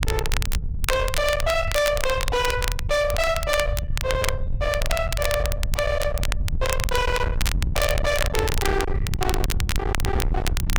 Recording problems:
distortion; hard clipping, signal-to-distortion ratio 6 dB
low-frequency rumble; below 140 Hz, SNR 3 dB
crackling; vinyl, SNR 7 dB

